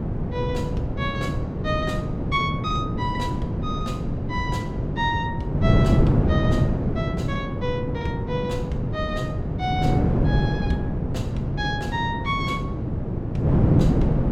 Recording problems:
wind noise; below 270 Hz, SNR -5 dB

